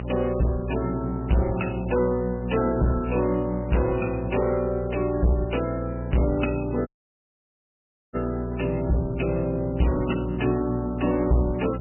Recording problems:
lossy codec; MP3, log-spectral distance 6 dB, nothing above 2.9 kHz
distortion; hard clipping, uneven, signal-to-distortion ratio 6 dB
electrical hum; 60 Hz, harmonics up to 840 Hz, SNR 7 dB
audio cutting out; at 7 s for 1.5 s

